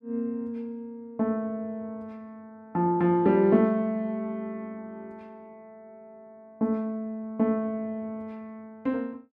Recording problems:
none

